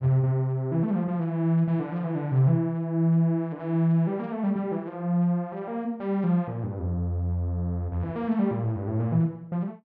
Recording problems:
none

